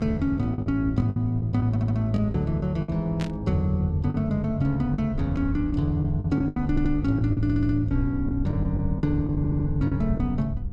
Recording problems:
electrical hum; 50 Hz, harmonics up to 700 Hz, SNR 17 dB
rumble; below 78 Hz, SNR 11 dB
lost packets; 9% of the sound replaced, filled with the last packet
stutter; 4 times, first at 1.5 s
static burst; at 3 s; peak -7 dB vs average level

